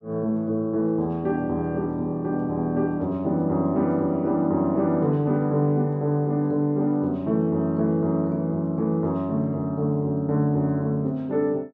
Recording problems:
none

